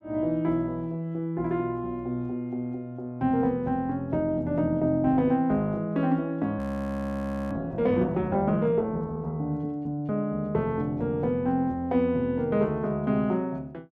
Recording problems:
audio freezing; at 6.5 s for 1 s

